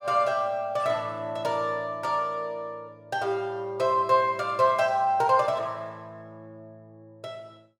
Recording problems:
none

